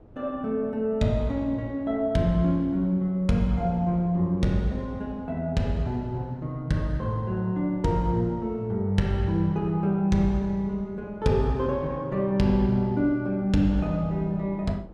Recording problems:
wind noise; below 380 Hz, SNR 23 dB

